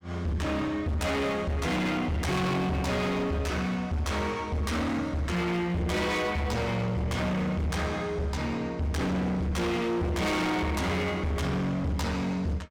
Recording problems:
distorted audio; hard clipping, uneven, signal-to-distortion ratio 6 dB

